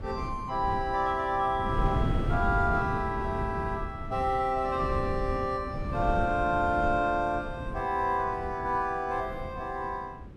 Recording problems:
wind noise; below 200 Hz, SNR 6 dB

